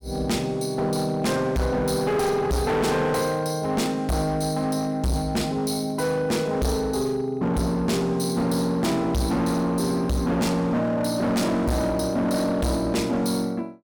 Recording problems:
distorted audio; hard clipping, signal-to-distortion ratio 7 dB

